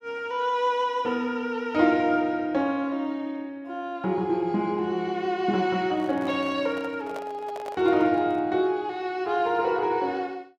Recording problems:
handling noise; from 6 to 8.5 s; peak -8 dB vs average level

